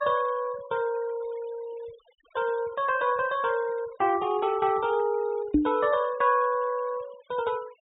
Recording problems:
treble missing; nothing above 4 kHz
denoising artefacts; signal-to-artefact ratio 23 dB
microphone thump; at 5.5 s; peak +9 dB vs average level

